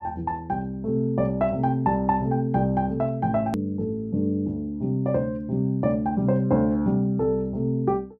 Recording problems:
hard cut with a click; at 3.5 s

